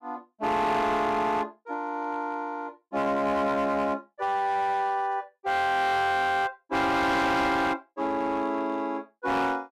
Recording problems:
distorted audio; hard clipping, signal-to-distortion ratio 10 dB

